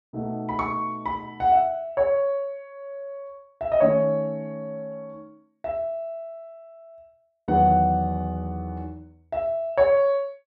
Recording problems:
none

